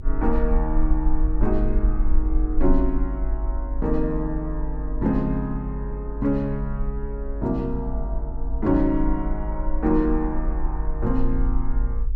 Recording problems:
mains hum; 60 Hz, harmonics up to 960 Hz, SNR 24 dB
low-frequency rumble; below 48 Hz, SNR 2 dB

